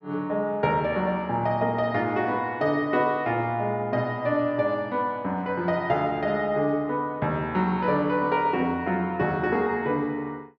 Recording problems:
none

